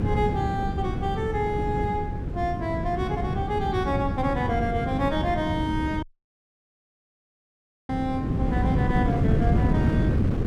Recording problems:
wind noise; below 230 Hz, SNR -1 dB
audio cutting out; at 6 s for 2 s

